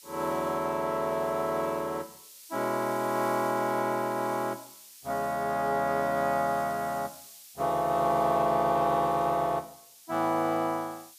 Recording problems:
background hiss; SNR 20 dB

